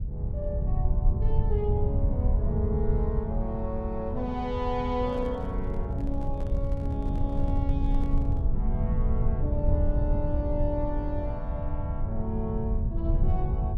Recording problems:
low-frequency rumble; below 92 Hz, SNR -4 dB
microphone handling noise; from 5 to 8.5 s; peak -10 dB vs average level

